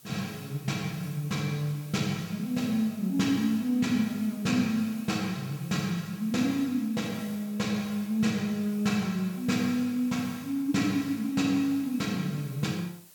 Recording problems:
background hiss; slope -1 dB per octave, SNR 21 dB

